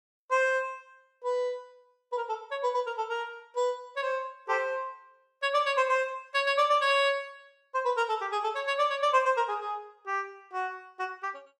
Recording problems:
none

